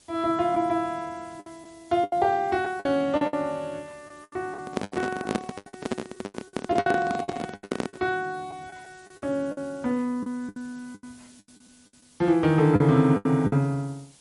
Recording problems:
codec artefacts; MP3, log-spectral distance 6 dB
background hiss; SNR 28 dB
packet loss; 12% of the sound replaced, filled with the last packet
handling noise; from 4.5 to 8 s; peak +3 dB vs average level

